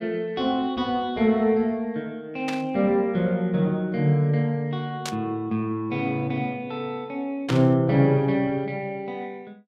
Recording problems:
static burst; at 2.5 s, at 5 s and at 7.5 s; peak -1 dB vs average level

